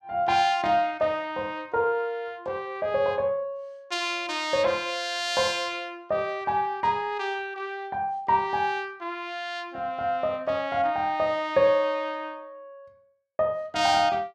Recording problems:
none

